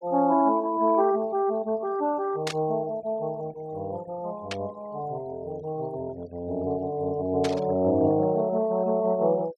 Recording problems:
noise reduction artefacts; signal-to-artefact ratio 24 dB
static burst; at 2.5 s, at 4.5 s and at 7.5 s; peak -1 dB vs average level

